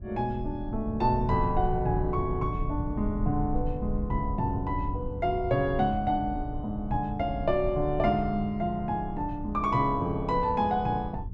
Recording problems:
low-frequency rumble; below 98 Hz, SNR 8 dB

